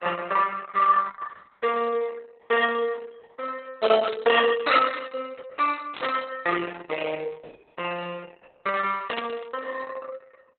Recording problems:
codec artefacts; Opus, log-spectral distance 4 dB, nothing above 3.9 kHz
static burst; at 4 s, at 6 s and at 9 s; peak -5 dB vs average level

